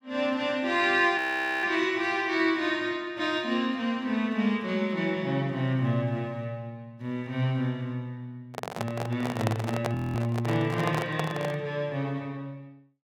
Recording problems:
audio freezing; at 1 s and at 10 s
handling noise; from 8.5 to 12 s; peak +2 dB vs average level

